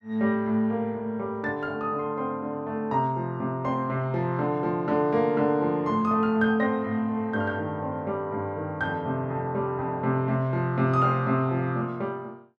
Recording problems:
none

